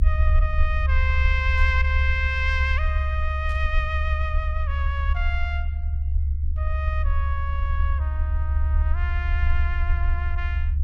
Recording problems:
low-frequency rumble; below 74 Hz, SNR -5 dB
static burst; at 1.5 s and at 3.5 s; peak -14 dB vs average level

